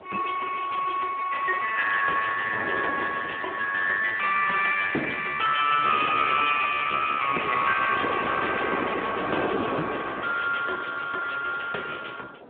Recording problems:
phone line; 260 Hz to 3.2 kHz, Speex
wind noise; below 780 Hz, SNR 8 dB

